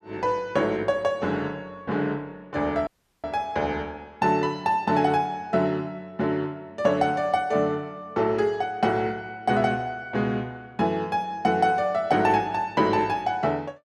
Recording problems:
dropout; at 3 s

